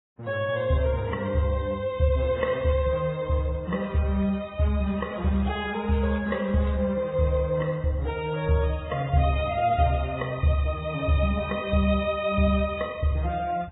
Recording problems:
lossy codec; Vorbis, then AAC, log-spectral distance 3 dB, nothing above 3.4 kHz
crackle; at 2.5 s, from 4 to 7 s and at 11 s; loose cable, SNR 26 dB

